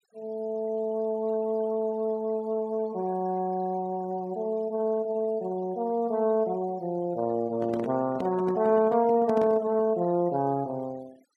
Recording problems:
denoising artefacts; signal-to-artefact ratio 26 dB
microphone handling noise; from 7.5 to 10 s; peak -4 dB vs average level

